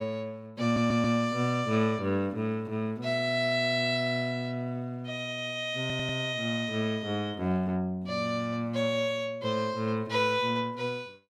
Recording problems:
audio stuttering; at 0.5 s and at 6 s

